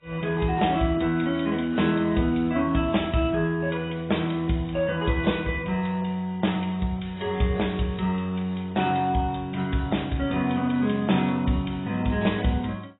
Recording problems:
lossy compression; AAC, log-spectral distance 4 dB, nothing above 3.8 kHz

